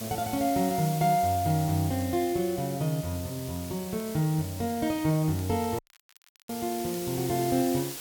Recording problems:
hiss; slope 0 dB per octave, SNR 11 dB
crackle; vinyl, SNR 29 dB
dropout; at 6 s for 0.5 s

